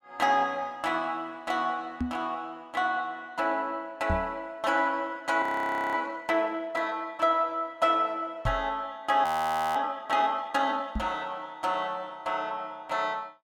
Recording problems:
microphone bump; 4 times, first at 2 s; peak +2 dB vs average level
audio freezing; at 5.5 s for 0.5 s and at 9 s for 0.5 s

